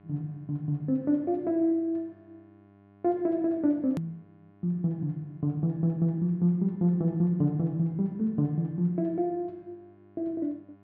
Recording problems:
low-pass filter; nothing above 8 kHz
hum; 50 Hz, harmonics up to 2.1 kHz, SNR 29 dB
edit click; at 4 s

